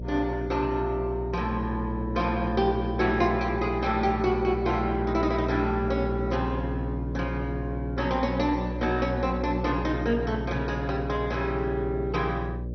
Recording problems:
lossy codec; MP2, log-spectral distance 2 dB, nothing above 6 kHz
hum; 60 Hz, harmonics up to 600 Hz, SNR 6 dB

